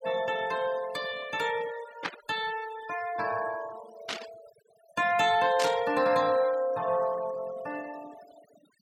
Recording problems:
noise reduction artefacts; signal-to-artefact ratio 17 dB
burst of static; at 2 s, at 4 s and at 5.5 s; peak +1 dB vs average level

